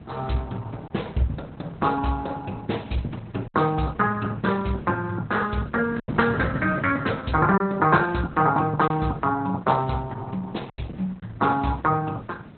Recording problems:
lossy compression; Opus, log-spectral distance 4 dB, nothing above 4.1 kHz
wind noise; below 330 Hz, SNR 16 dB
packet loss; 2% of the sound replaced, filled with silence

